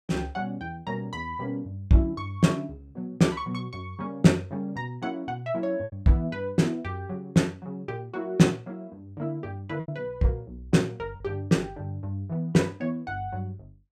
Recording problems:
lost packets; 1.5% of the sound replaced, filled with repeated pitch periods

